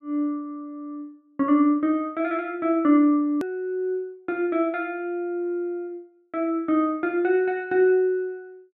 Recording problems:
hard cut with a click; at 3.5 s

